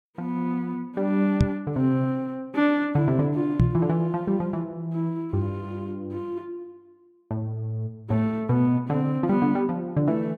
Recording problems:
microphone bump; at 1.5 s and at 3.5 s; peak +9 dB vs average level

